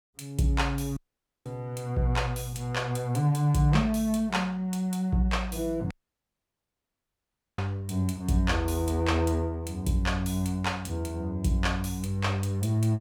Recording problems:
dropout; at 1 s and at 6 s for 1.5 s

